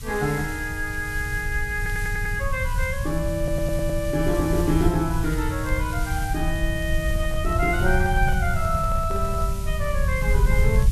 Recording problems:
background hiss; slope +2 dB per octave, SNR 14 dB
rumble; below 90 Hz, SNR 2 dB
crackle; vinyl, SNR 29 dB
stutter; at 2 s and at 3.5 s
handling noise; from 7 to 9.5 s; peak -11 dB vs average level

